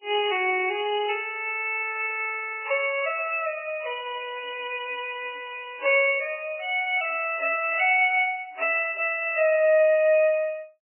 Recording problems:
codec artefacts; MP3, log-spectral distance 5 dB, nothing above 2.4 kHz

